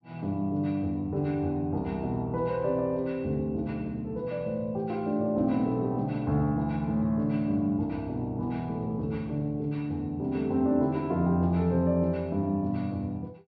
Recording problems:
treble missing; nothing above 5.5 kHz

